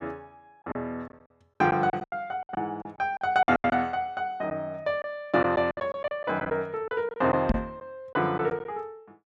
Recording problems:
packet loss; 11% of the sound replaced, filled with silence
microphone bump; at 7.5 s; peak +6 dB vs average level

